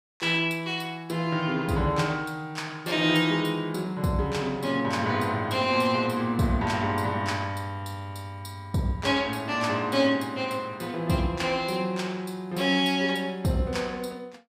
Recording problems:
none

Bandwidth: 15.5 kHz